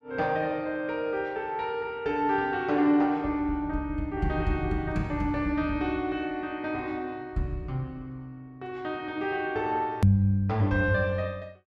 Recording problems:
click at an edit; at 10 s

